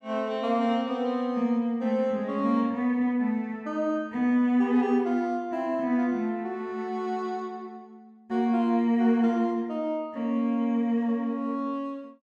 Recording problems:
none

